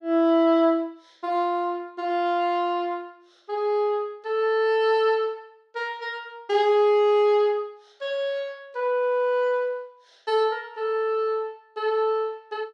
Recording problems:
none

